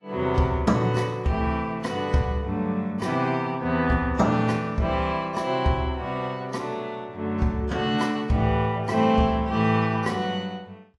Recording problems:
codec artefacts; AAC, log-spectral distance 2 dB

